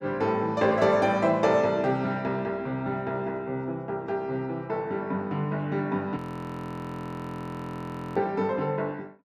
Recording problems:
frozen audio; at 6 s for 2 s

